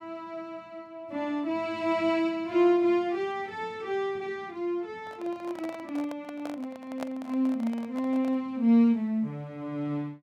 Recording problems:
microphone handling noise; from 5 to 8.5 s; peak -4 dB vs average level

